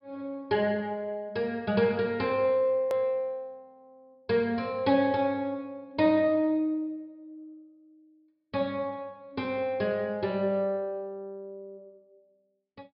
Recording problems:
low-pass filter; nothing above 5.5 kHz
click at an edit; at 3 s

